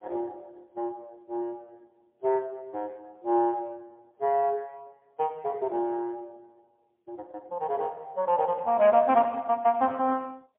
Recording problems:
phone line; 280 Hz to 3.4 kHz, AMR-NB, then MP3

